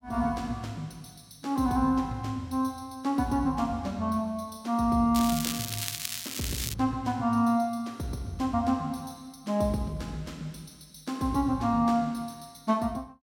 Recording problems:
crackle; from 5 to 6.5 s; loose cable, SNR 4 dB

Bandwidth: 16.5 kHz